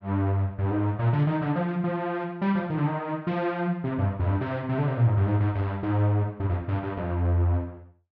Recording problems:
none

